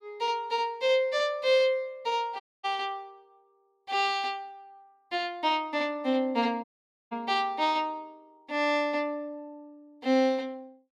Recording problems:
audio cutting out; at 2.5 s and at 6.5 s

